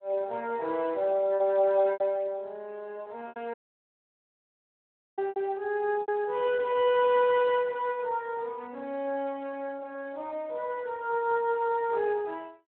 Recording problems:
phone line; 280 Hz to 3.4 kHz, Speex
lost packets; 3% of the sound replaced, filled with repeated pitch periods
audio cutting out; at 3.5 s for 1.5 s

